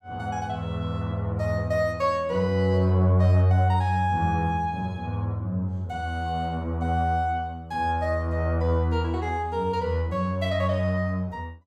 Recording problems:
none

